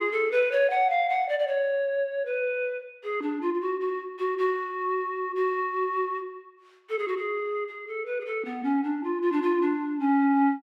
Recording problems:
none

